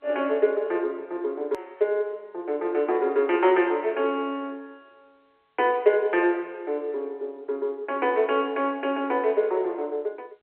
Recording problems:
phone line; 300 Hz to 3.4 kHz, G.711
edit click; at 1.5 s

